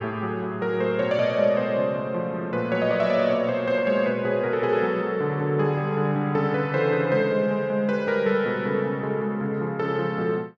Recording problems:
none

